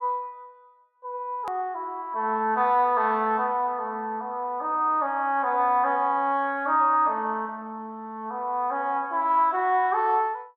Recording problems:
edit click; at 1.5 s

